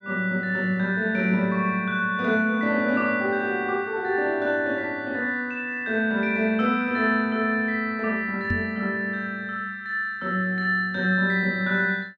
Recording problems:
knock on the microphone; at 8.5 s; peak 0 dB vs average level

